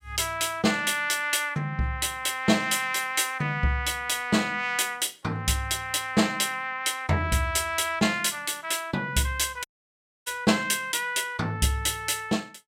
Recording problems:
dropout; at 9.5 s for 0.5 s

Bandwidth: 16.5 kHz